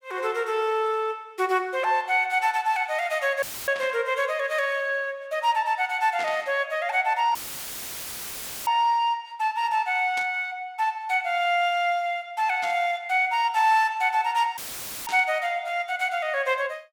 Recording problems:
dropout; at 3.5 s, at 7.5 s for 1.5 s and at 15 s; filled with static
burst of static; 5 times, first at 4 s; peak -8 dB vs average level

